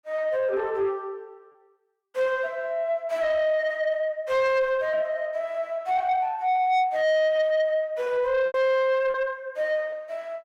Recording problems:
distorted audio; soft clipping, signal-to-distortion ratio 11 dB
lost packets; 1.7% of the sound replaced, filled with repeated pitch periods

